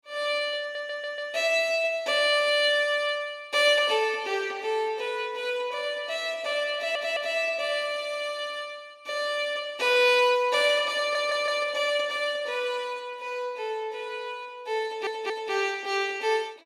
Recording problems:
audio stuttering; 4 times, first at 0.5 s

